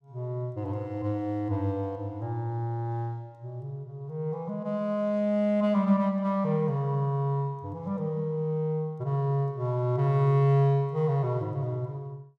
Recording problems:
none

